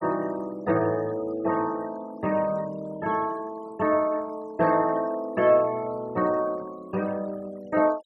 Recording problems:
denoising artefacts; signal-to-artefact ratio 22 dB

